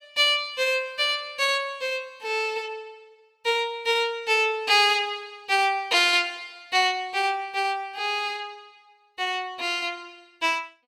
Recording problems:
none

